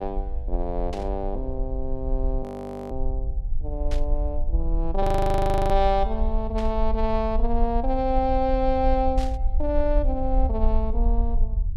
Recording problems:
rumble; below 50 Hz, SNR 2 dB
burst of static; 4 times, first at 1 s; peak -9 dB vs average level
frozen audio; at 2.5 s and at 5 s for 0.5 s

